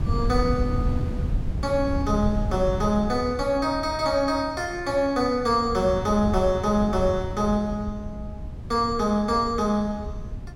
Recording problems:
wind noise; below 130 Hz, SNR 8 dB

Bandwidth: 16 kHz